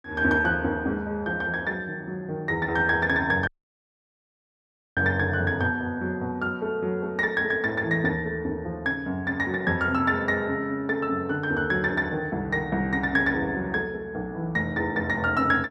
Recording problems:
audio cutting out; at 3.5 s for 1.5 s

